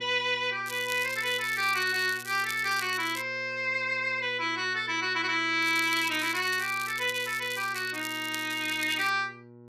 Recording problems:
hum; 60 Hz, harmonics up to 1.1 kHz, SNR 22 dB
crackle; from 0.5 to 3 s and from 5.5 to 9 s; loose cable, SNR 13 dB

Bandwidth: 14.5 kHz